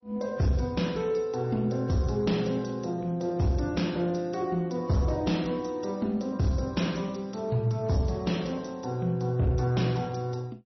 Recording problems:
lossy codec; MP3, log-spectral distance 5 dB, nothing above 5.8 kHz
distorted audio; soft clipping, signal-to-distortion ratio 12 dB

